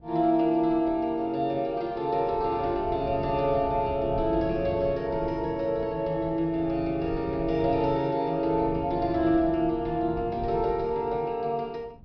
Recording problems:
treble missing; nothing above 5.5 kHz
wind noise; below 190 Hz, SNR 14 dB

